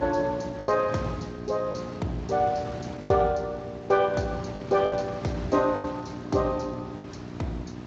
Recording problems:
lossy codec; Speex, log-spectral distance 3 dB
hum; 60 Hz, harmonics up to 1 kHz, SNR 13 dB
wind noise; below 1 kHz, SNR 15 dB
packet loss; 6% of the sound replaced, filled with the last packet

